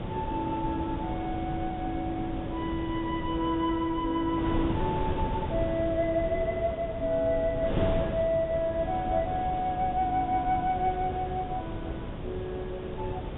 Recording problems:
low-pass filter; nothing above 3.7 kHz
wind on the microphone; below 400 Hz, SNR 6 dB

